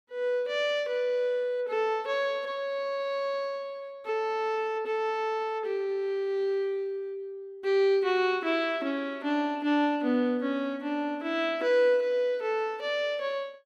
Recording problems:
none

